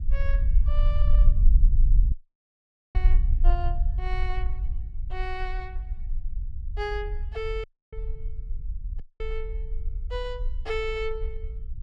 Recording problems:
low-frequency rumble; below 48 Hz, SNR -7 dB
dropout; at 2 s for 1 s, at 7.5 s and at 9 s

